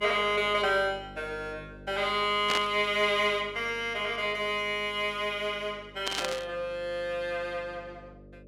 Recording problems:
electrical hum; 50 Hz, harmonics up to 600 Hz, SNR 22 dB
static burst; at 2.5 s and at 6 s; peak +2 dB vs average level

